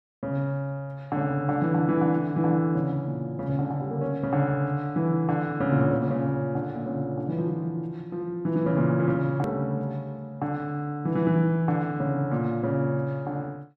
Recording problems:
click at an edit; at 9.5 s

